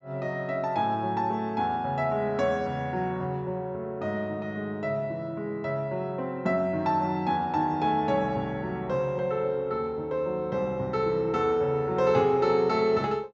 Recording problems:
treble missing; nothing above 8 kHz

